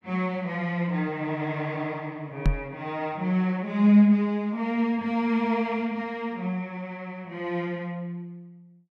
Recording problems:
knock on the microphone; at 2.5 s; peak +6 dB vs average level

